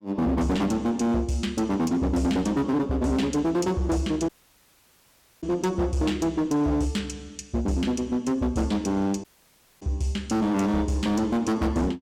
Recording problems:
distorted audio; hard clipping, signal-to-distortion ratio 8 dB
dropout; at 4.5 s for 1 s and at 9 s for 0.5 s

